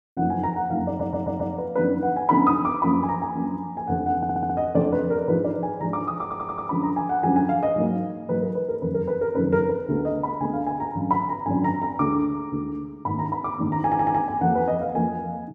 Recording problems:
audio stuttering; 4 times, first at 1 s

